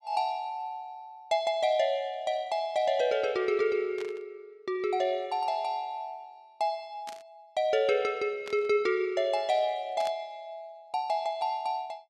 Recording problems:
static burst; 4 times, first at 4 s; peak -9 dB vs average level

